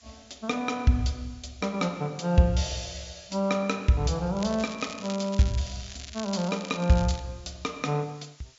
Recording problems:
low-pass filter; nothing above 7.4 kHz
background hiss; SNR 27 dB
crackle; from 4.5 to 7 s; loose cable, SNR 14 dB

